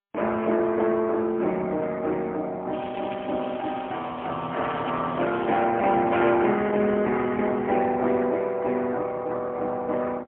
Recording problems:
telephone audio; 260 Hz to 3.1 kHz, AMR-NB, then MP3
crackle; from 2.5 to 5.5 s; loose cable, SNR 18 dB

